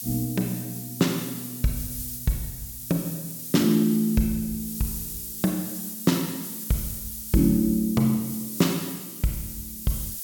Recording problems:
background hiss; slope +7 dB per octave, SNR 7 dB

